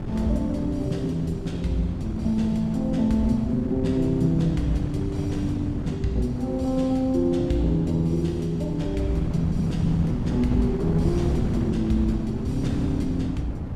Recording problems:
wind on the microphone; below 230 Hz, SNR 5 dB

